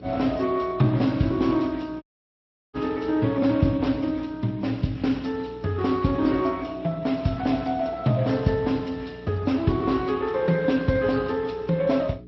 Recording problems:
lossy codec; MP3, then Speex, log-spectral distance 3 dB
mains hum; 60 Hz, harmonics up to 420 Hz, SNR 20 dB
audio cutting out; at 2 s for 0.5 s

